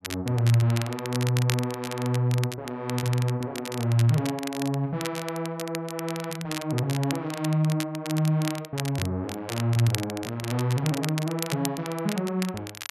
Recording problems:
crackle; vinyl, SNR 10 dB

